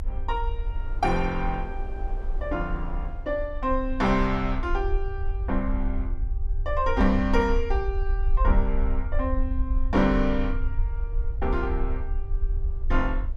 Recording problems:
rumble; below 54 Hz, strongest tone 26 Hz, SNR 2 dB
wind noise; below 710 Hz, SNR 22 dB

